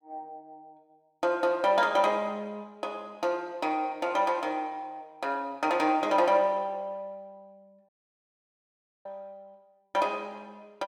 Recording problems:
dropout; at 8 s for 1 s

